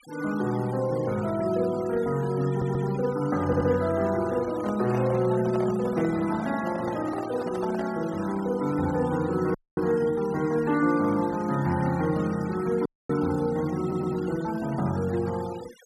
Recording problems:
noise reduction artefacts; signal-to-artefact ratio 18 dB
stutter; at 2.5 s, at 3.5 s and at 14 s
microphone handling noise; from 4.5 to 8 s; peak -6 dB vs average level
dropout; at 9.5 s and at 13 s

